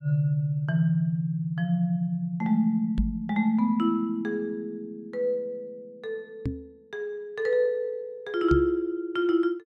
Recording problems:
knock on the microphone; at 3 s, at 6.5 s and at 8.5 s; peak +3 dB vs average level

